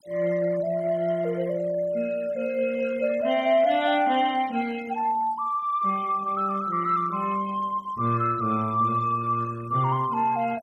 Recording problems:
denoising artefacts; signal-to-artefact ratio 21 dB

